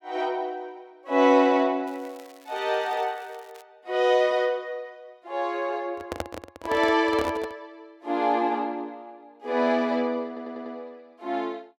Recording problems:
crackling; from 2 to 3.5 s; loose cable, SNR 29 dB
microphone handling noise; from 6 to 7.5 s; peak -1 dB vs average level
stutter; at 10 s

